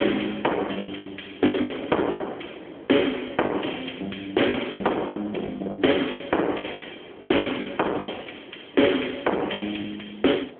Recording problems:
phone line; 240 Hz to 3.4 kHz, AMR-NB
distortion; hard clipping, uneven, signal-to-distortion ratio 10 dB
wind on the microphone; below 610 Hz, SNR 17 dB
packet loss; 13% of the sound replaced, filled with the last packet

